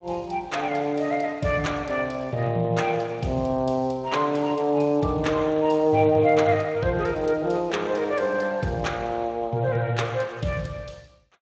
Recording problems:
codec artefacts; Speex, log-spectral distance 3 dB

